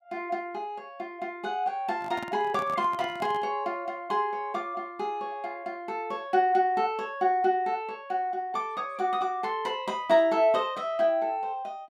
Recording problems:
microphone handling noise; from 2 to 3.5 s; peak -8 dB vs average level

